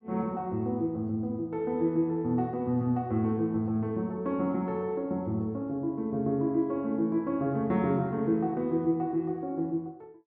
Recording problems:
none

